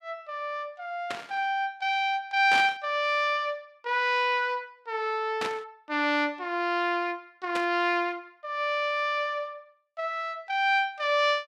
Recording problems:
burst of static; 4 times, first at 1 s; peak -1 dB vs average level

